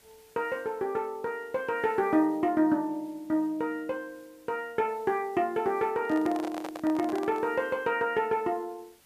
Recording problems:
hiss; slope -2 dB per octave, SNR 29 dB
microphone handling noise; from 6 to 7.5 s; peak -5 dB vs average level

